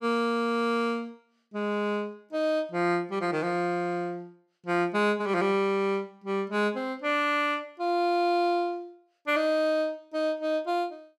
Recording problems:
none

